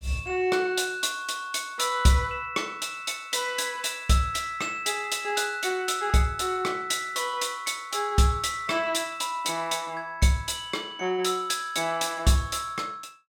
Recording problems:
none

